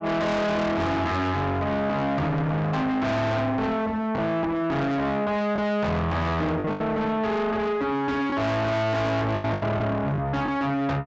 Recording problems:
low-pass filter; nothing above 8 kHz
distortion; soft clipping, signal-to-distortion ratio 6 dB
lost packets; 4% of the sound replaced, filled with the last packet

